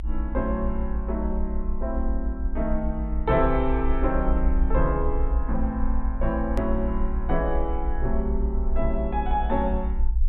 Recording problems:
treble missing; nothing above 4 kHz
rumble; below 54 Hz, strongest tone 20 Hz, SNR 1 dB
hard cut with a click; at 6.5 s

